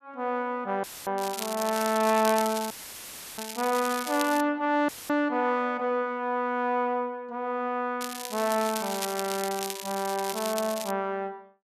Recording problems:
audio cutting out; at 1 s, at 2.5 s for 0.5 s and at 5 s; filled with static
crackling; from 1 to 4.5 s and from 8 to 11 s; loose cable, SNR 8 dB

